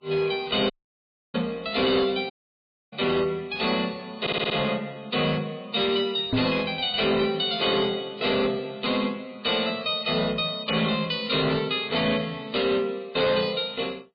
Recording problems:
codec artefacts; MP3, log-spectral distance 6 dB
distorted audio; hard clipping, signal-to-distortion ratio 11 dB
audio cutting out; at 0.5 s for 0.5 s and at 2.5 s for 0.5 s
audio stuttering; at 4 s
knock on the microphone; at 6.5 s; peak +4 dB vs average level

